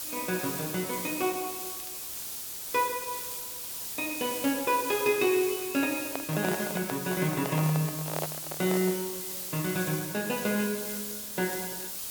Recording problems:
hiss; SNR 4 dB
crackling; vinyl, SNR 28 dB
handling noise; from 6 to 9 s; peak 0 dB vs average level

